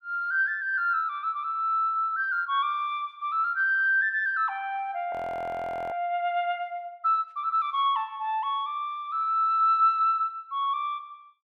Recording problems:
frozen audio; at 5 s for 1 s

